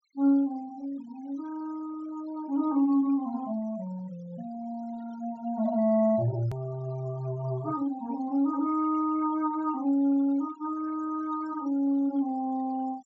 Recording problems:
low-pass filter; nothing above 8 kHz
noise reduction artefacts; signal-to-artefact ratio 23 dB
hard cut with a click; at 6.5 s

